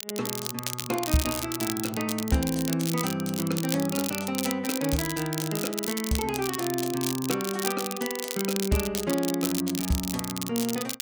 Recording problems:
crackle; vinyl, SNR 4 dB

